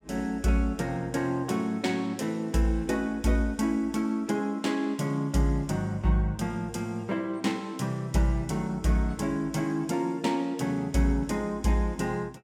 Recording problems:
none

